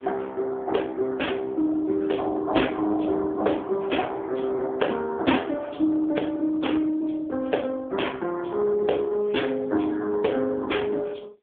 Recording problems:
telephone audio; 260 Hz to 3.4 kHz, AMR-NB

